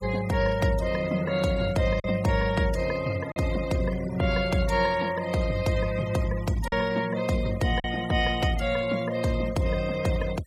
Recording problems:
noise reduction artefacts; signal-to-artefact ratio 16 dB
packet loss; 1.5% of the sound replaced, filled with silence

